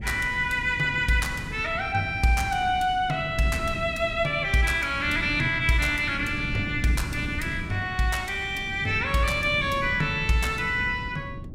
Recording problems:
wind on the microphone; below 220 Hz, SNR 12 dB

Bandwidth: 16 kHz